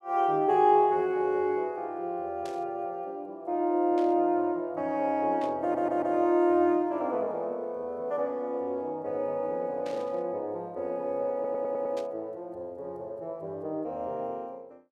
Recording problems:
burst of static; 5 times, first at 2.5 s; peak -13 dB vs average level
audio stuttering; at 5.5 s and at 11 s

